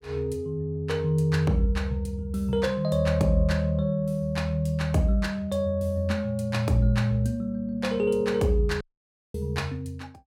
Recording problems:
audio cutting out; at 9 s for 0.5 s

